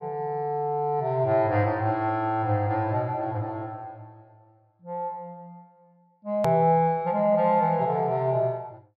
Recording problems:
low-pass filter; nothing above 5.5 kHz
click at an edit; at 6.5 s

